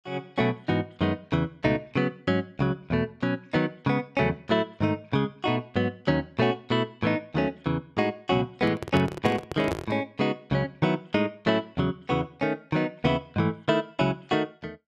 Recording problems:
handling noise; from 8.5 to 10 s; peak +2 dB vs average level

